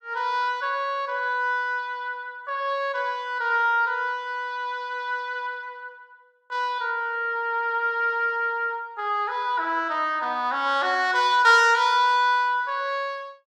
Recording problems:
none

